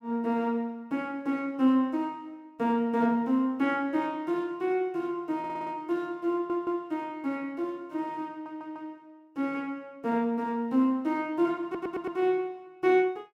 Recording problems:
stutter; 4 times, first at 5.5 s

